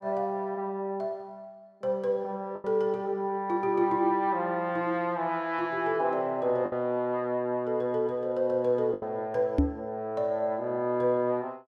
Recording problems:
lost packets; 1.9% of the sound replaced, filled with the last packet
knock on the microphone; at 9.5 s; peak +8 dB vs average level

